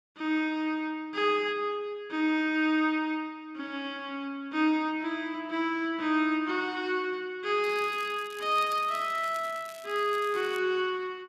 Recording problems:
crackling; from 7.5 to 11 s; loose cable, SNR 20 dB

